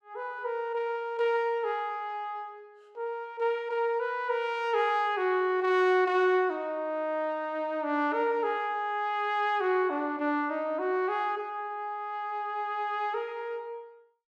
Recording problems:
none

